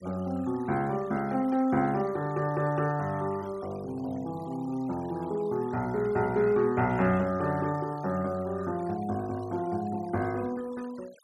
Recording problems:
noise reduction artefacts; signal-to-artefact ratio 22 dB

